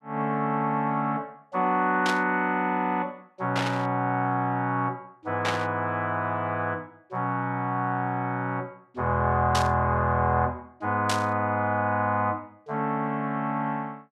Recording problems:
burst of static; 5 times, first at 2 s; peak +2 dB vs average level

